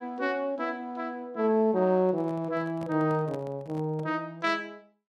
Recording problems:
microphone handling noise; from 2 to 4 s; peak -10 dB vs average level

